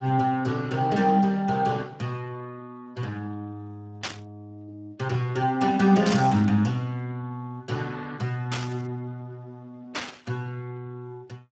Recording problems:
lossy codec; Speex, log-spectral distance 3 dB
burst of static; 4 times, first at 4 s; peak 0 dB vs average level

